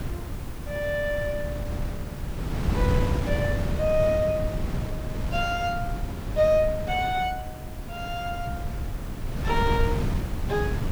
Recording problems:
background hiss; slope -4 dB per octave, SNR 20 dB
wind noise; below 190 Hz, SNR 3 dB

